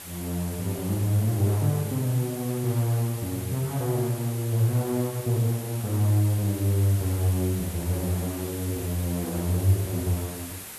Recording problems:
hiss; slope -2 dB per octave, SNR 12 dB

